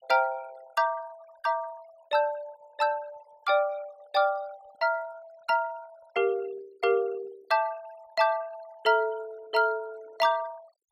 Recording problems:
noise reduction artefacts; signal-to-artefact ratio 24 dB

